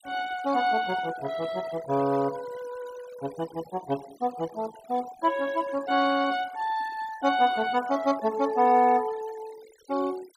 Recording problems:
noise reduction artefacts; signal-to-artefact ratio 19 dB

